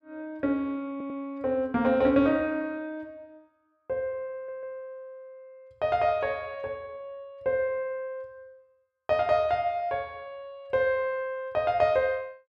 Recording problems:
stutter; at 1 s and at 4.5 s

